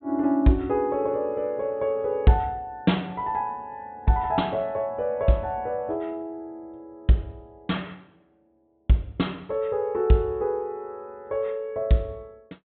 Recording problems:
treble cut off; nothing above 4 kHz

